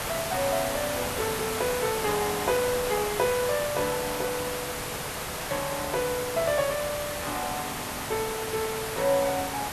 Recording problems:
hiss; SNR 2 dB

